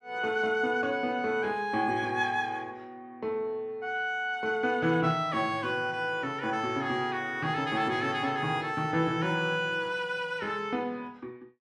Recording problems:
none

